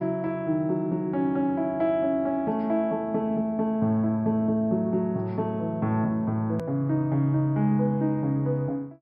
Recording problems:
treble cut off; nothing above 5.5 kHz
edit click; at 6.5 s

